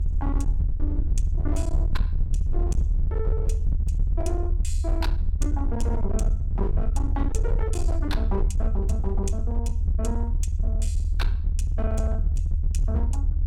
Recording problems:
distorted audio; hard clipping, signal-to-distortion ratio 10 dB
rumble; below 76 Hz, strongest tone 36 Hz, SNR -7 dB

